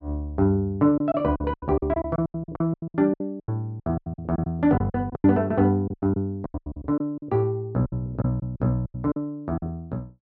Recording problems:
packet loss; 18% of the sound replaced, filled with silence

